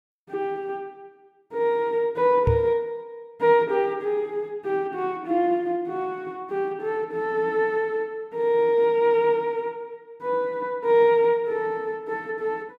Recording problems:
knock on the microphone; at 2.5 s; peak +4 dB vs average level

